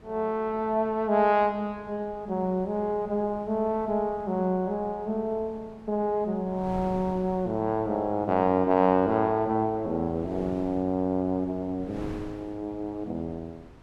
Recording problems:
wind noise; below 460 Hz, SNR 20 dB

